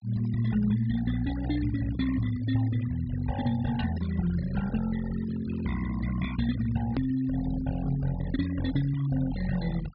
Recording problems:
low-pass filter; nothing above 5.5 kHz
noise reduction artefacts; signal-to-artefact ratio 15 dB
click at an edit; at 7 s

